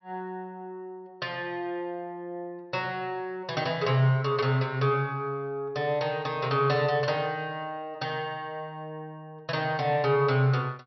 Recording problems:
low-pass filter; nothing above 5.7 kHz

